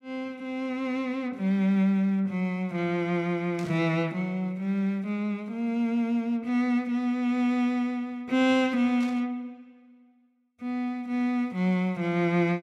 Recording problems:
burst of static; at 3.5 s and at 9 s; peak -14 dB vs average level

